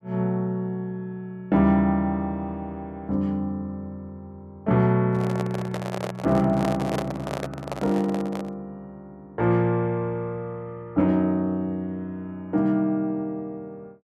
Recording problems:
handling noise; from 5 to 8.5 s; peak 0 dB vs average level

